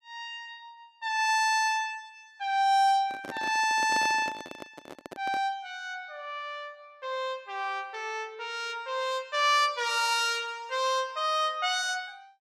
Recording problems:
handling noise; from 3 to 5.5 s; peak -6 dB vs average level

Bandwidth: 14.5 kHz